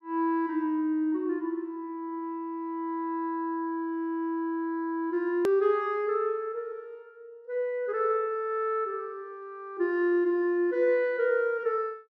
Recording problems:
edit click; at 5.5 s

